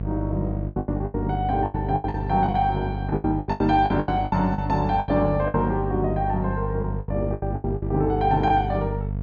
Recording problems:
hum; 50 Hz, harmonics up to 700 Hz, SNR 5 dB
packet loss; 16% of the sound replaced, filled with the last packet

